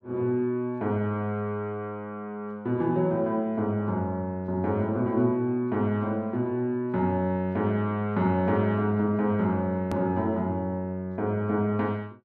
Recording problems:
edit click; at 10 s

